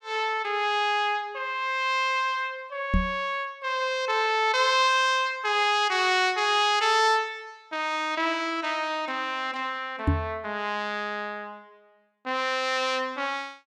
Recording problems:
microphone thump; at 3 s and at 10 s; peak +5 dB vs average level

